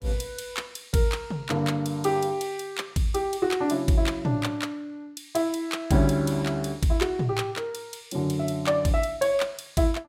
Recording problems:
none

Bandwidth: 16 kHz